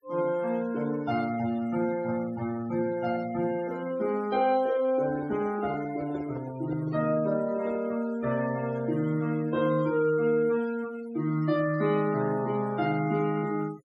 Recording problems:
noise reduction artefacts; signal-to-artefact ratio 19 dB
handling noise; from 5 to 8 s; peak -5 dB vs average level

